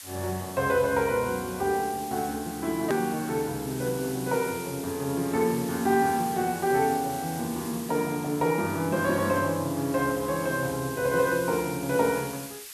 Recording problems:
hiss; slope +3 dB per octave, SNR 13 dB
edit click; at 3 s

